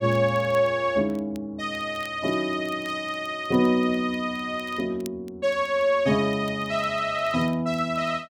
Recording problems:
crackling; vinyl, SNR 27 dB

